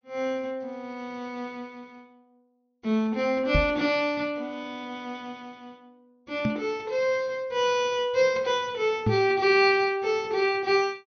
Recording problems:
low-pass filter; nothing above 6.4 kHz
microphone bump; at 3.5 s, at 6.5 s and at 9 s; peak +4 dB vs average level

